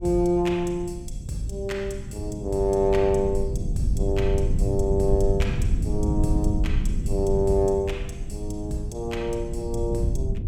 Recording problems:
rumble; below 110 Hz, SNR 3 dB

